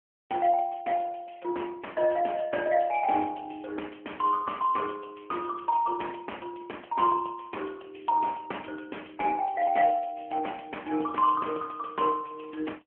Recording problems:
phone line; 260 Hz to 3.2 kHz, AMR-NB

